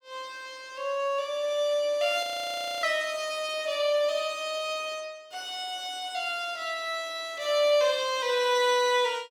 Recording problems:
frozen audio; at 2 s for 0.5 s

